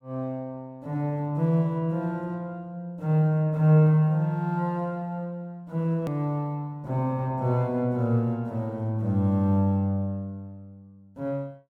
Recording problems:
click at an edit; at 6 s

